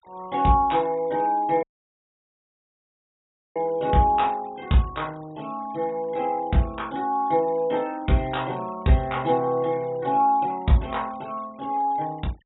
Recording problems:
treble cut off; nothing above 3.8 kHz
denoising artefacts; signal-to-artefact ratio 27 dB
audio cutting out; at 1.5 s for 2 s

